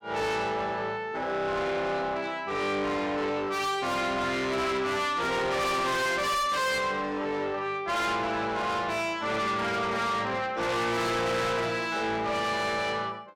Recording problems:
distorted audio; soft clipping, signal-to-distortion ratio 6 dB

